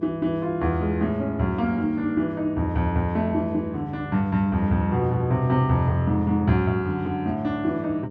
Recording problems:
electrical hum; 50 Hz, harmonics up to 600 Hz, SNR 15 dB

